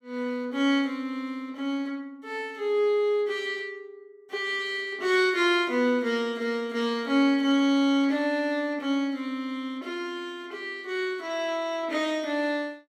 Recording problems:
none

